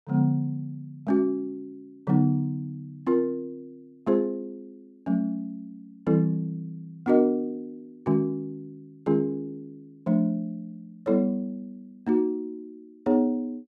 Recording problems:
none

